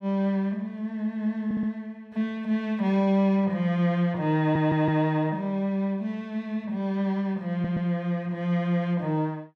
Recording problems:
audio stuttering; at 1.5 s, at 4.5 s and at 7.5 s

